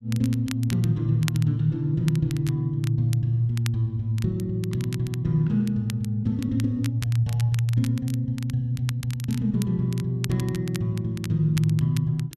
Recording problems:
crackling; vinyl, SNR 17 dB

